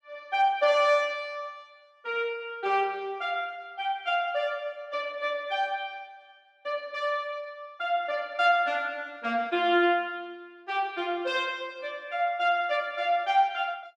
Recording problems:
none

